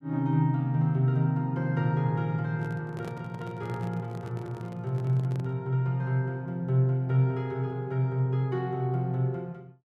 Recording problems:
microphone handling noise; from 2.5 to 5.5 s; peak -8 dB vs average level

